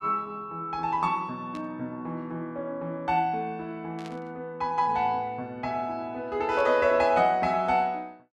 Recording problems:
static burst; at 1.5 s, at 4 s and at 6.5 s; peak -13 dB vs average level

